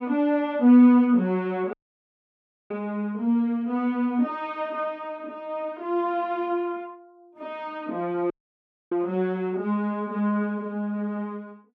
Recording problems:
audio cutting out; at 1.5 s for 1 s and at 8.5 s for 0.5 s

